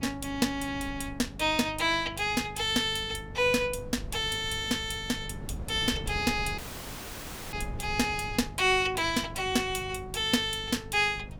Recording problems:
hum; 50 Hz, harmonics up to 750 Hz, SNR 18 dB
wind noise; below 180 Hz, SNR 16 dB
dropout; at 6.5 s for 1 s

